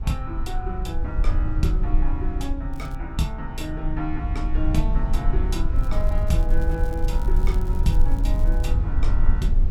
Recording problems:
rumble; below 50 Hz, strongest tone 20 Hz, SNR -5 dB
crackling; at 2.5 s and from 6 to 8.5 s; loose cable, SNR 21 dB

